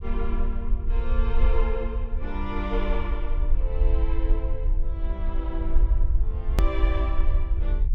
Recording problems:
rumble; below 50 Hz, strongest tone 18 Hz, SNR -7 dB
hard cut with a click; at 6.5 s

